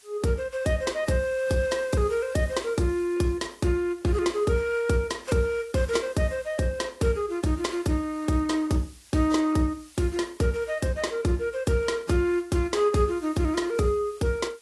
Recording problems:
lossy compression; AAC, log-spectral distance 3 dB, nothing above 11.3 kHz
hiss; slope +2 dB per octave, SNR 26 dB

